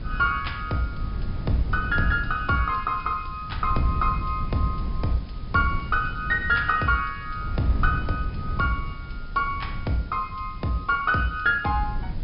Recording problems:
treble missing; nothing above 5.5 kHz
hiss; slope 0 dB per octave, SNR 27 dB
wind on the microphone; below 110 Hz, SNR 7 dB

